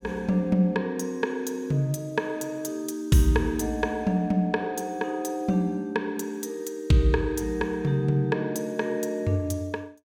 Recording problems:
none

